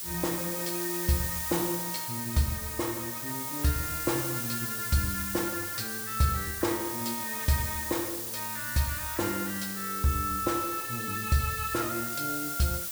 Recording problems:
background hiss; slope +2 dB per octave, SNR 1 dB

